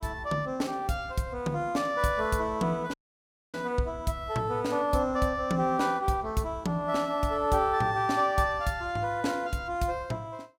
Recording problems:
dropout; at 3 s for 0.5 s

